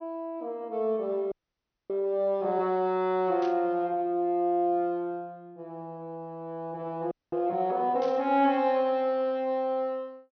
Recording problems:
treble missing; nothing above 6.3 kHz
frozen audio; at 1.5 s for 0.5 s and at 7 s
burst of static; at 3.5 s and at 8 s; peak -14 dB vs average level

